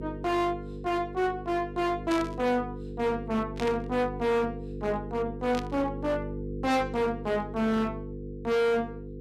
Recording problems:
distorted audio; hard clipping, signal-to-distortion ratio 7 dB
hum; 50 Hz, harmonics up to 500 Hz, SNR 9 dB
burst of static; at 2 s, at 3.5 s and at 5.5 s; peak -5 dB vs average level

